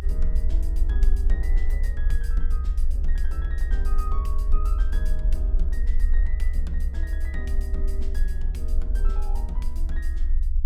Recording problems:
low-frequency rumble; below 48 Hz, strongest tone 22 Hz, SNR -13 dB

